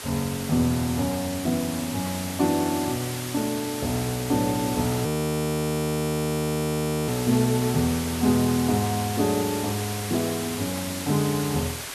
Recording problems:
hiss; slope -1 dB per octave, SNR 7 dB
frozen audio; at 5 s for 2 s

